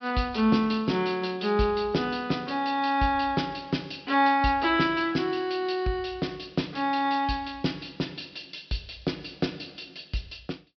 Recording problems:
low-pass filter; nothing above 5.5 kHz

